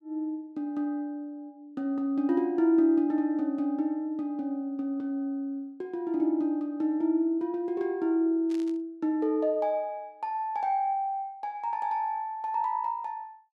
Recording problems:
static burst; at 8.5 s; peak -15 dB vs average level

